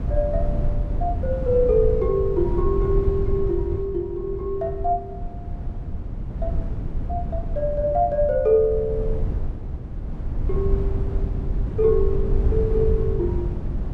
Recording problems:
low-frequency rumble; below 98 Hz, SNR 4 dB

